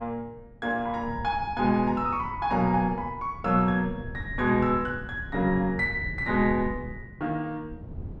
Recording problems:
wind on the microphone; below 170 Hz, SNR 13 dB

